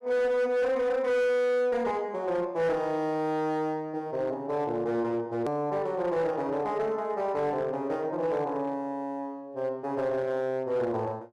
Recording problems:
distorted audio; hard clipping, signal-to-distortion ratio 11 dB
edit click; at 5.5 s

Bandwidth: 12 kHz